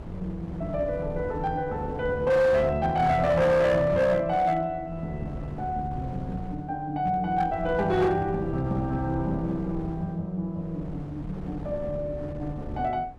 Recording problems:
distorted audio; hard clipping, signal-to-distortion ratio 12 dB
wind on the microphone; below 260 Hz, SNR 13 dB

